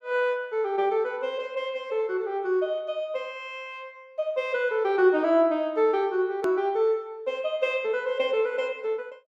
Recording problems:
click at an edit; at 6.5 s

